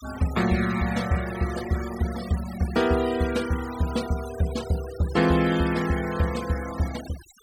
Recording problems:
denoising artefacts; signal-to-artefact ratio 14 dB

